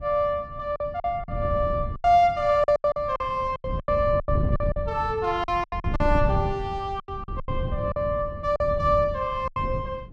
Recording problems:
wind noise; below 140 Hz, SNR 7 dB
lost packets; 13% of the sound replaced, filled with silence

